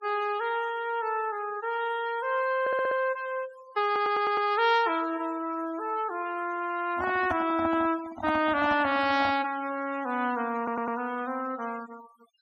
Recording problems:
noise reduction artefacts; signal-to-artefact ratio 17 dB
stutter; at 2.5 s, at 4 s and at 11 s
microphone handling noise; from 7 to 9.5 s; peak 0 dB vs average level

